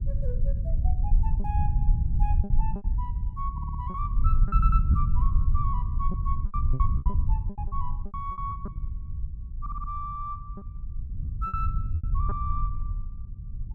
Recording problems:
low-frequency rumble; below 74 Hz, SNR -8 dB
lost packets; 10% of the sound replaced, filled with repeated pitch periods
audio stuttering; at 3.5 s, at 4.5 s and at 9.5 s

